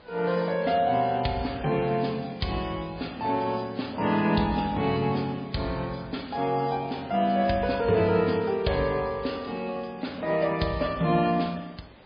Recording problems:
codec artefacts; MP3, log-spectral distance 6 dB
background hiss; SNR 26 dB

